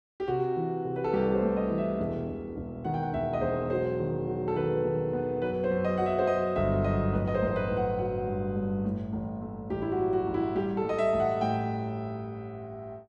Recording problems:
none

